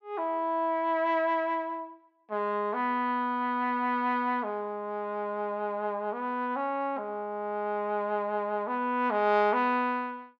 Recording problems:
none

